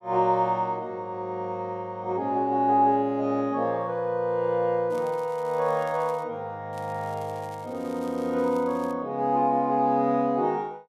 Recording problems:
crackling; from 5 to 6 s and from 6.5 to 9 s; loose cable, SNR 27 dB

